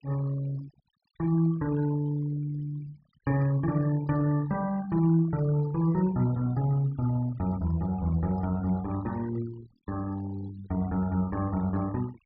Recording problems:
treble missing; nothing above 5.5 kHz
noise reduction artefacts; signal-to-artefact ratio 19 dB

